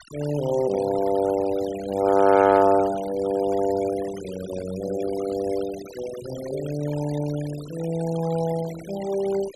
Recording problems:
noise reduction artefacts; signal-to-artefact ratio 17 dB

